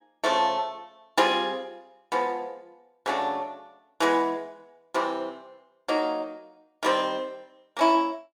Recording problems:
none

